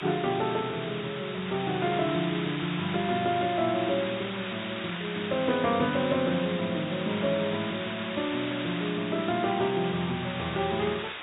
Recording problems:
treble missing; nothing above 4 kHz
background hiss; SNR 7 dB

